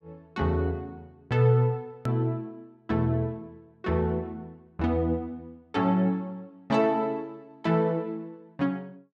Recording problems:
hard cut with a click; at 2 s

